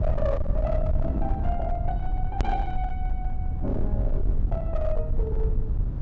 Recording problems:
treble missing; nothing above 8 kHz
distortion; hard clipping, signal-to-distortion ratio 10 dB
hum; 60 Hz, harmonics up to 600 Hz, SNR 18 dB
low-frequency rumble; below 72 Hz, SNR -4 dB
edit click; at 2.5 s

